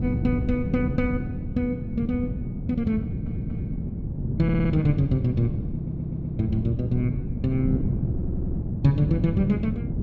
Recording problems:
wind on the microphone; below 200 Hz, SNR 3 dB
audio stuttering; 4 times, first at 3 s

